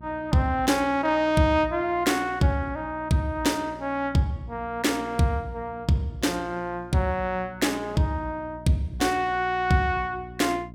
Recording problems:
electrical hum; 60 Hz, harmonics up to 660 Hz, SNR 20 dB

